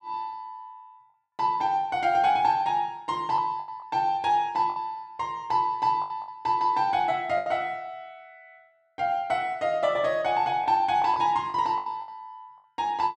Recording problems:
lost packets; 6% of the sound replaced, filled with the last packet

